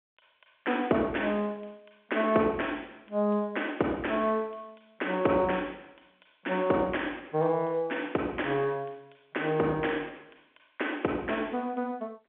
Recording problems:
phone line; 260 Hz to 3.3 kHz, G.711

